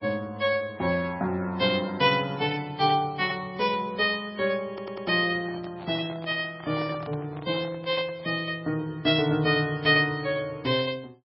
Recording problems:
lossy compression; MP3, log-spectral distance 3 dB
audio stuttering; at 4.5 s
handling noise; from 5.5 to 8.5 s; peak -10 dB vs average level

